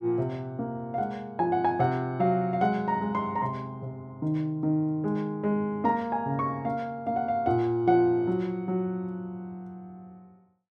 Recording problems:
none

